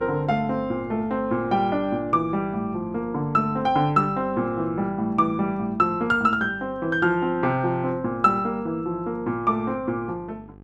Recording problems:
hum; 50 Hz, harmonics up to 1.3 kHz, SNR 22 dB

